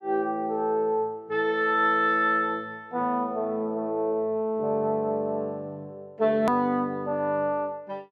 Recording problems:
edit click; at 6.5 s

